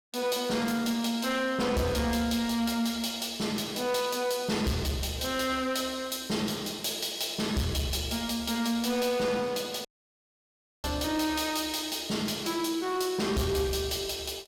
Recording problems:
distortion; soft clipping, signal-to-distortion ratio 11 dB
dropout; at 10 s for 1 s

